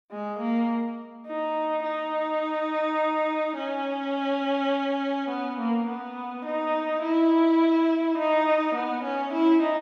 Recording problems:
none

